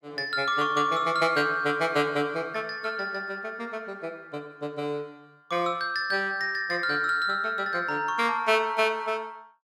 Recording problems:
none

